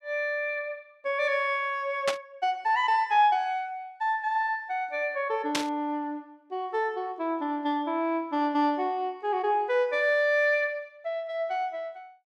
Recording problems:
burst of static; at 2 s and at 5.5 s; peak +4 dB vs average level

